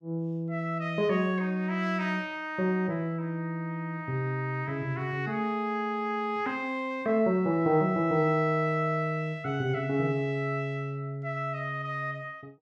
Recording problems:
none

